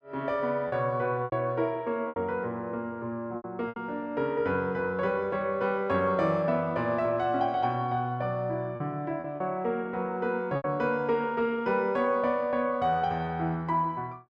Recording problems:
packet loss; 4% of the sound replaced, filled with repeated pitch periods

